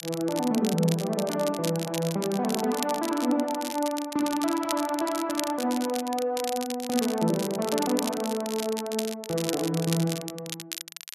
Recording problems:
crackling; vinyl, SNR 8 dB

